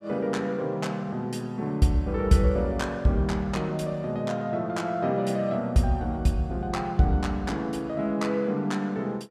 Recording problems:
none

